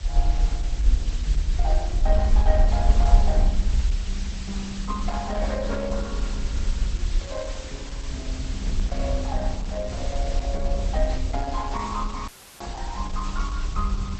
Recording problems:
lossy compression; Opus, log-spectral distance 2 dB
background hiss; slope +1 dB per octave, SNR 8 dB
rumble; below 56 Hz, SNR -4 dB
handling noise; from 8.5 to 11 s; peak -1 dB vs average level
dropout; at 12 s; filled with static

